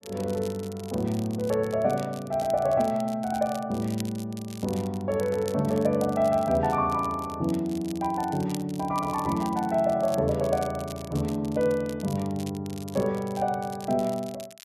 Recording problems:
crackle; vinyl, SNR 19 dB

